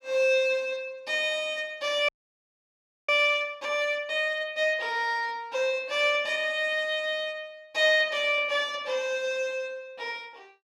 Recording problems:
frozen audio; at 2 s for 1 s

